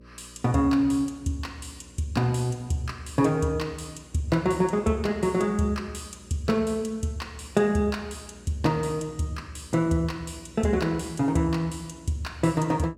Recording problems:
hum; 60 Hz, harmonics up to 600 Hz, SNR 24 dB

